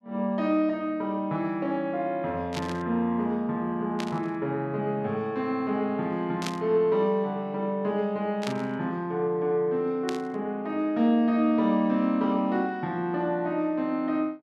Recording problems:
burst of static; 5 times, first at 2.5 s; peak -2 dB vs average level

